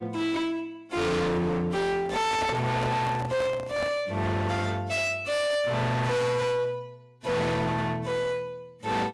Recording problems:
lossy compression; AAC, log-spectral distance 2 dB, nothing above 11.3 kHz
distortion; hard clipping, uneven, signal-to-distortion ratio 6 dB
microphone handling noise; from 2 to 4 s; peak 0 dB vs average level

